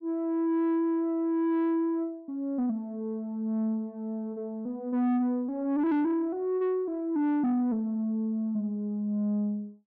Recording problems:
distortion; soft clipping, signal-to-distortion ratio 11 dB

